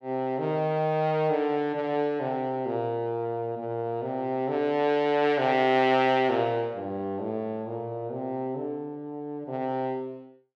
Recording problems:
none

